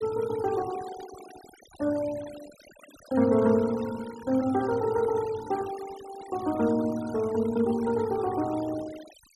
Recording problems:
denoising artefacts; signal-to-artefact ratio 19 dB

